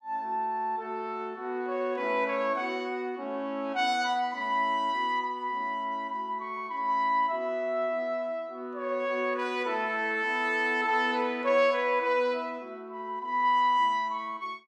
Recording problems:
none

